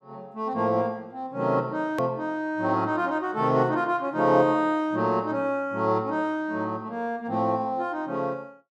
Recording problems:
hard cut with a click; at 2 s

